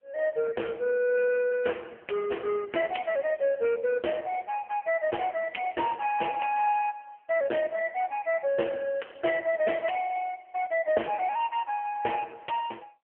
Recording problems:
phone line; 280 Hz to 3.1 kHz, AMR-NB

